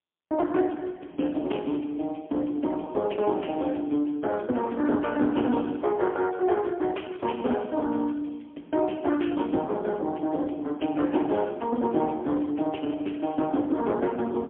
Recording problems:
telephone audio; 240 Hz to 3.2 kHz, AMR-NB, then MP3

